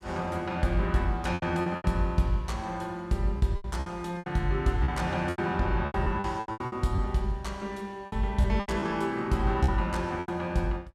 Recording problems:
packet loss; 12% of the sound replaced, filled with repeated pitch periods

